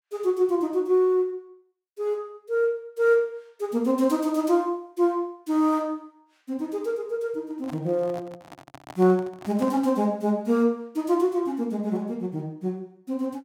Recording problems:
microphone handling noise; from 7.5 to 10 s; peak -10 dB vs average level

